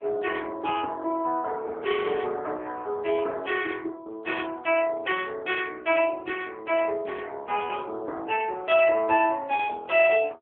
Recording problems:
telephone audio; 300 Hz to 3.3 kHz, AMR-NB

